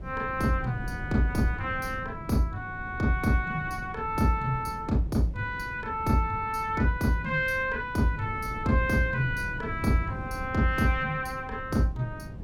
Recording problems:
wind on the microphone; below 200 Hz, SNR 12 dB

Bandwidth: 18 kHz